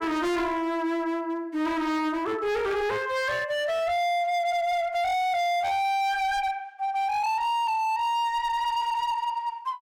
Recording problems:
distorted audio; hard clipping, signal-to-distortion ratio 8 dB

